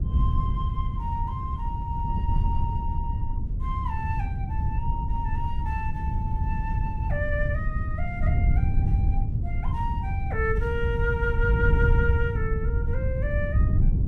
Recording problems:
wind noise; below 100 Hz, SNR -5 dB

